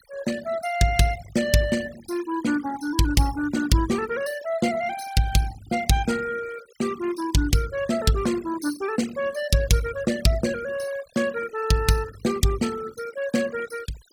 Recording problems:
denoising artefacts; signal-to-artefact ratio 16 dB

